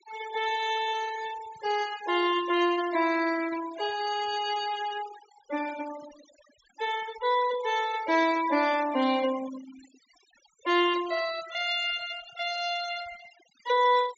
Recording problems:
low-pass filter; nothing above 8 kHz
noise reduction artefacts; signal-to-artefact ratio 14 dB

